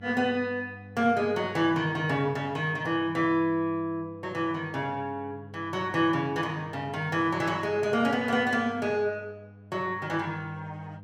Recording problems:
hum; 50 Hz, harmonics up to 800 Hz, SNR 19 dB

